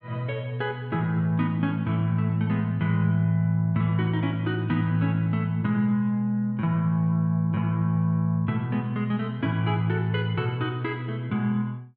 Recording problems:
none

